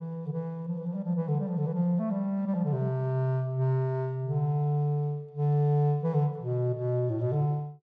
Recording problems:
none

